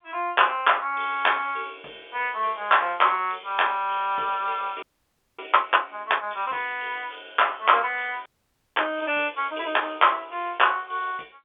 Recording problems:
phone line; 320 Hz to 3.5 kHz, G.711
frozen audio; at 5 s for 0.5 s and at 8.5 s for 0.5 s

